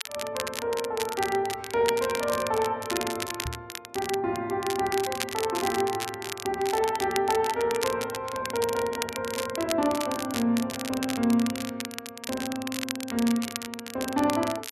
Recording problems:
crackling; vinyl, SNR 7 dB
microphone bump; at 3.5 s; peak -3 dB vs average level

